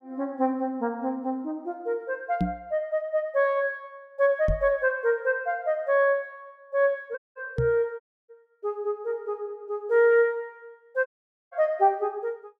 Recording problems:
microphone bump; at 2.5 s, at 4.5 s and at 7.5 s; peak +4 dB vs average level
dropout; at 7 s, at 8 s and at 11 s

